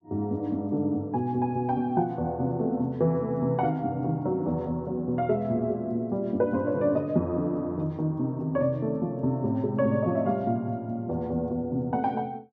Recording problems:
none

